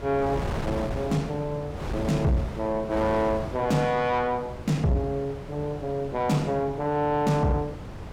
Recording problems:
distortion; soft clipping, signal-to-distortion ratio 11 dB
wind noise; below 580 Hz, SNR 9 dB

